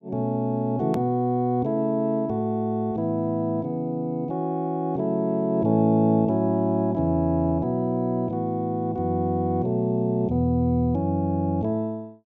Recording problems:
hard cut with a click; at 1 s

